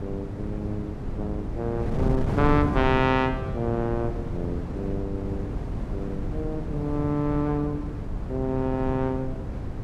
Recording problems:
wind on the microphone; below 220 Hz, SNR 3 dB

